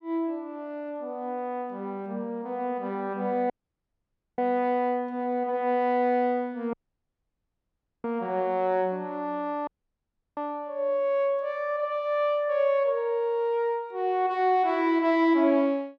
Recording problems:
audio cutting out; at 3.5 s for 1 s, at 6.5 s for 1.5 s and at 9.5 s for 0.5 s

